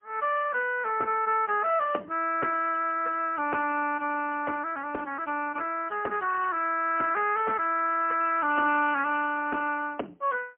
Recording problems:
phone line; 260 Hz to 3.1 kHz, AMR-NB, then MP3

